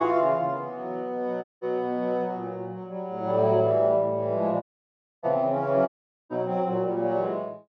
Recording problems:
dropout; at 1.5 s, at 4.5 s for 0.5 s and at 6 s

